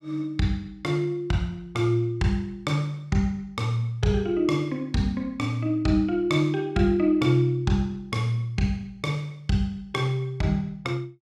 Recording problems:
none

